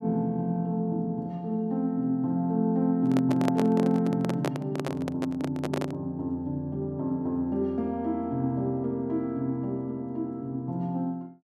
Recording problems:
microphone handling noise; from 3 to 6 s; peak +3 dB vs average level

